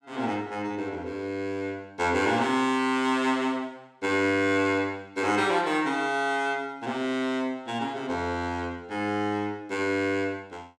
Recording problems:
none

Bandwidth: 16 kHz